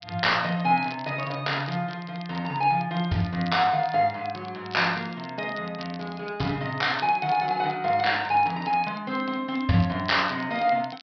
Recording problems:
treble missing; nothing above 5.5 kHz
crackle; vinyl, SNR 21 dB

